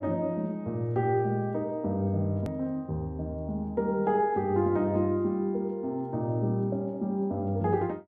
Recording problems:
edit click; at 2.5 s

